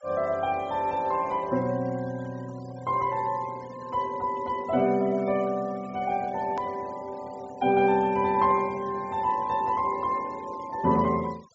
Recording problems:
treble cut off; nothing above 8 kHz
noise reduction artefacts; signal-to-artefact ratio 22 dB
edit click; at 6.5 s

